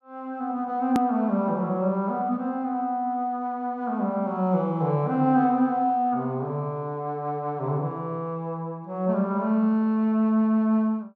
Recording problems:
edit click; at 1 s

